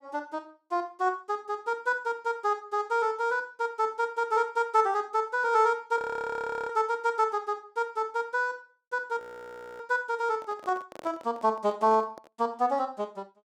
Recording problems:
frozen audio; at 6 s for 0.5 s and at 9 s for 0.5 s
microphone handling noise; from 10 to 12 s; peak -11 dB vs average level

